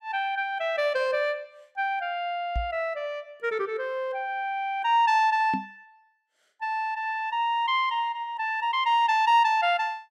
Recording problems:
microphone bump; at 2.5 s and at 5.5 s; peak -2 dB vs average level

